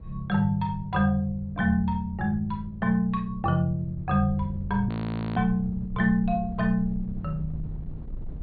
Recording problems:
low-pass filter; nothing above 4.5 kHz
wind noise; below 94 Hz, SNR 14 dB
audio freezing; at 5 s

